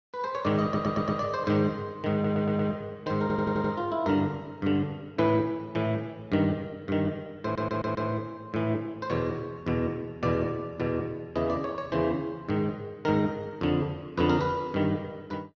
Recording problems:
lossy compression; Opus, log-spectral distance 2 dB
stutter; 4 times, first at 0.5 s

